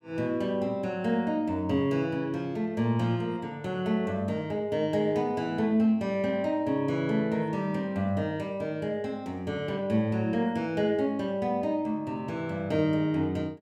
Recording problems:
none

